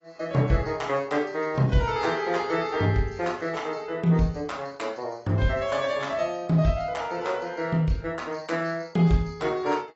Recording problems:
codec artefacts; AAC, log-spectral distance 3 dB, nothing above 7.6 kHz

